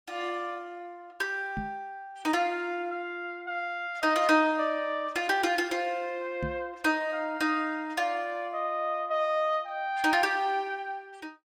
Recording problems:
microphone thump; at 1.5 s and at 6.5 s; peak -2 dB vs average level

